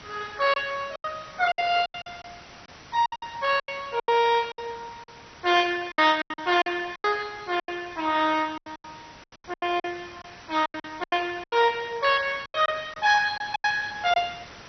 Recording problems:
lossy codec; MP2, log-spectral distance 11 dB, nothing above 5 kHz
background hiss; slope -2 dB per octave, SNR 21 dB
packet loss; 15% of the sound replaced, filled with silence

